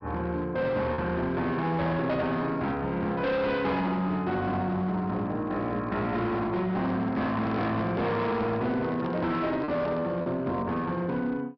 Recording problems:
low-pass filter; nothing above 5.5 kHz
distorted audio; hard clipping, signal-to-distortion ratio 10 dB
packet loss; 1% of the sound replaced, filled with repeated pitch periods
handling noise; from 6.5 to 10 s; peak -4 dB vs average level

